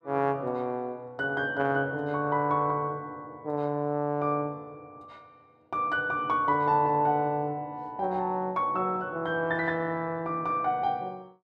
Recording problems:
none

